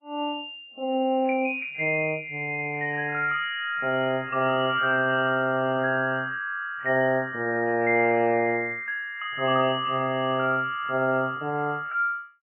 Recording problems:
lossy codec; MP3, log-spectral distance 3 dB, nothing above 2.5 kHz

